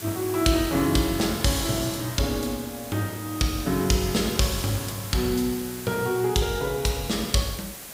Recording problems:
background hiss; slope -2 dB per octave, SNR 11 dB

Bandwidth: 15.5 kHz